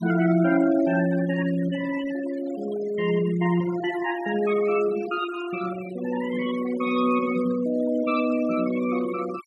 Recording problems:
noise reduction artefacts; signal-to-artefact ratio 15 dB

